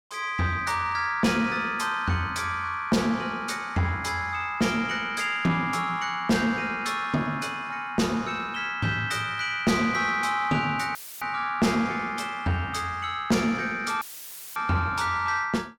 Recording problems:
distortion; soft clipping, signal-to-distortion ratio 10 dB
dropout; at 11 s and at 14 s for 0.5 s; filled with static

